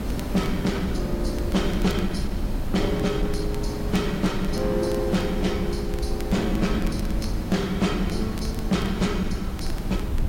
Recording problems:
lossy compression; AAC, log-spectral distance 2 dB, nothing above 11 kHz
distorted audio; hard clipping, uneven, signal-to-distortion ratio 12 dB
electrical hum; 50 Hz, harmonics up to 900 Hz, SNR 23 dB
background hiss; slope -7 dB per octave, SNR 8 dB
wind noise; below 66 Hz, SNR 6 dB
crackling; vinyl, SNR 21 dB

